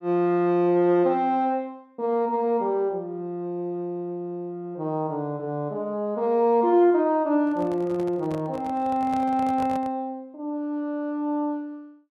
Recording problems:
handling noise; from 7.5 to 10 s; peak -9 dB vs average level

